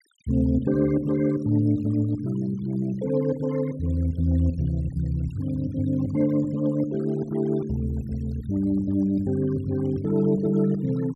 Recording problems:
denoising artefacts; signal-to-artefact ratio 27 dB

